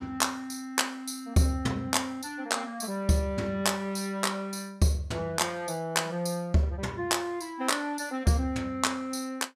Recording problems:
none

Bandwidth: 15 kHz